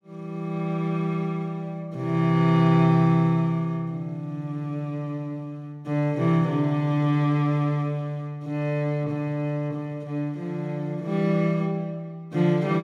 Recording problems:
none

